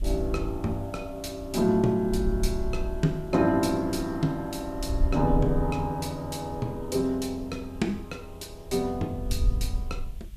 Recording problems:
hiss; SNR 29 dB
wind on the microphone; below 60 Hz, SNR 6 dB

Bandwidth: 14.5 kHz